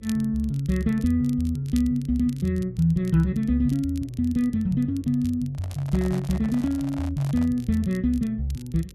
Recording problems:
mains hum; 50 Hz, harmonics up to 550 Hz, SNR 25 dB
crackling; vinyl, SNR 25 dB
microphone handling noise; from 5.5 to 7.5 s; peak -11 dB vs average level

